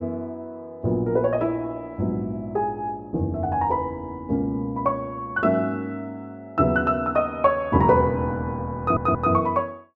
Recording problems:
stutter; at 9 s

